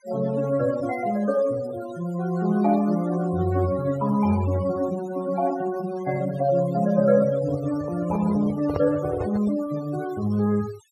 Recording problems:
denoising artefacts; signal-to-artefact ratio 18 dB
microphone handling noise; from 7.5 to 9.5 s; peak 0 dB vs average level

